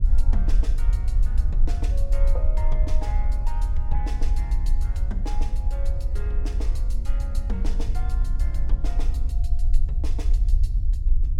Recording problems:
rumble; below 48 Hz, SNR -13 dB

